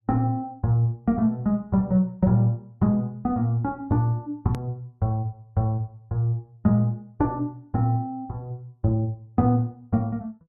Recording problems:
edit click; at 4.5 s

